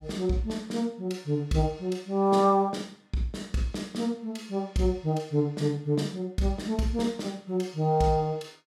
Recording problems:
none

